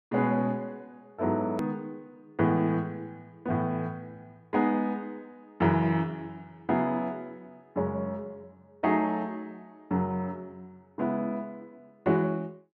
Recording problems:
click at an edit; at 1.5 s

